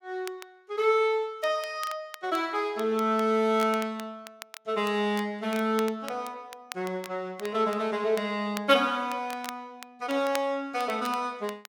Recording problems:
crackle; vinyl, SNR 17 dB

